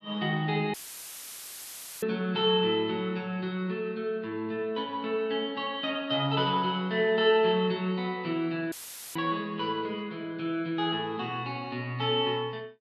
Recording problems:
audio cutting out; at 0.5 s for 1.5 s and at 8.5 s; filled with static

